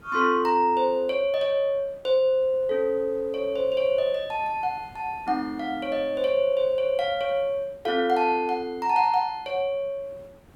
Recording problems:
background hiss; slope -7 dB per octave, SNR 28 dB

